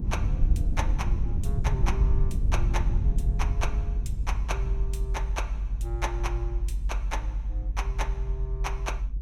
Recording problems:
low-frequency rumble; below 64 Hz, SNR -8 dB

